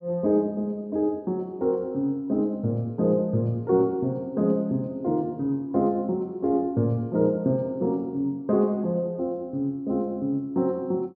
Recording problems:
none

